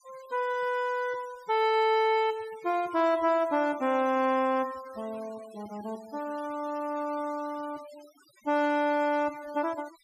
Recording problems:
noise reduction artefacts; signal-to-artefact ratio 23 dB

